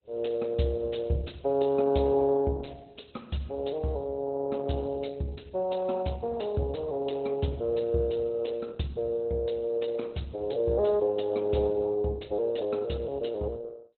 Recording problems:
lossy codec; Opus, log-spectral distance 3 dB, nothing above 4 kHz

